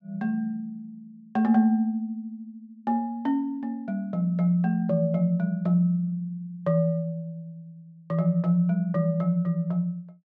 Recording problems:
none

